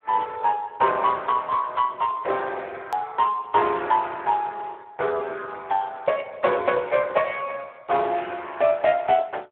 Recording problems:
telephone audio; 320 Hz to 3.5 kHz, Speex
hard cut with a click; at 3 s

